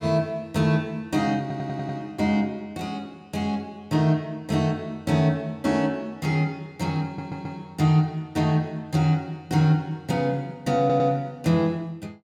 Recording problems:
audio stuttering; at 1.5 s, at 7 s and at 11 s

